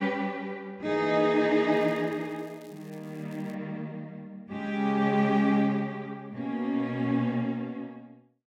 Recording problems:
crackle; from 1.5 to 3.5 s; loose cable, SNR 30 dB

